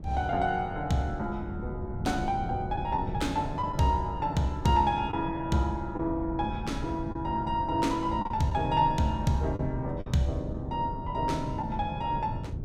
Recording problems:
wind on the microphone; below 180 Hz, SNR 8 dB
lost packets; 2% of the sound replaced, filled with the last packet

